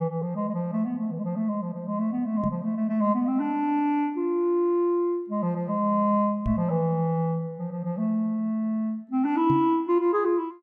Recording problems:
microphone thump; at 2.5 s, at 6.5 s and at 9.5 s; peak +1 dB vs average level

